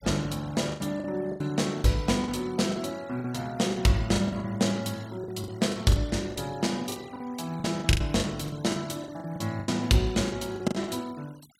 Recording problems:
noise reduction artefacts; signal-to-artefact ratio 22 dB
lost packets; 13% of the sound replaced, filled with the last packet

